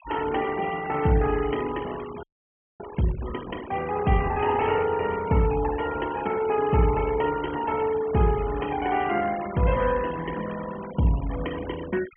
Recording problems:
low-pass filter; nothing above 3.2 kHz
noise reduction artefacts; signal-to-artefact ratio 16 dB
audio freezing; at 2 s for 0.5 s

